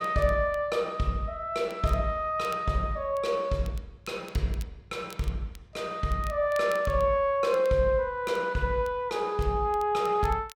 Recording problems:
crackling; vinyl, SNR 24 dB

